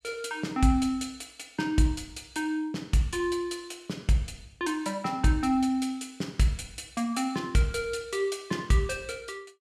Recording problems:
none

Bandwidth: 14 kHz